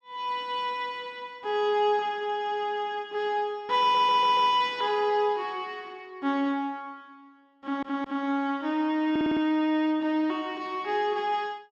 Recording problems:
audio stuttering; at 4 s, at 7.5 s and at 9 s

